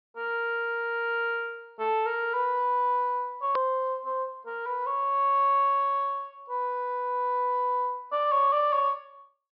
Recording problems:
low-pass filter; nothing above 5.5 kHz
click at an edit; at 3.5 s

